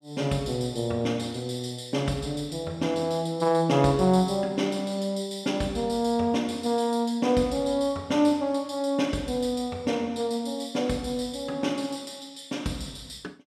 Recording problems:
none

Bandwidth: 14.5 kHz